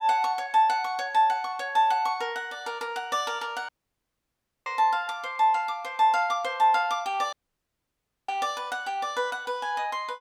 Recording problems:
audio cutting out; at 3.5 s for 1 s and at 7.5 s for 1 s

